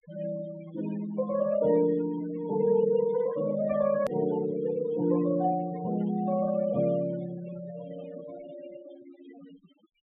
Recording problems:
treble cut off; nothing above 3.5 kHz
noise reduction artefacts; signal-to-artefact ratio 16 dB
click at an edit; at 4 s

